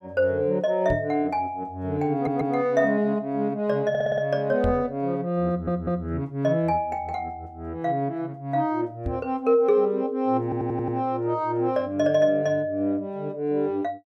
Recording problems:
microphone thump; at 1 s, at 4.5 s and at 9 s; peak -1 dB vs average level
audio stuttering; 4 times, first at 2 s

